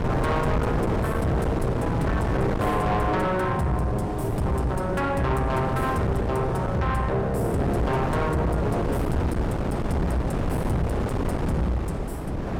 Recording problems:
distortion; soft clipping, signal-to-distortion ratio 8 dB
wind on the microphone; below 560 Hz, SNR 2 dB

